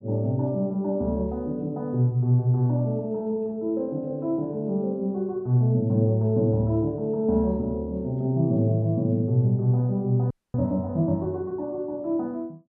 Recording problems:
audio freezing; at 10 s

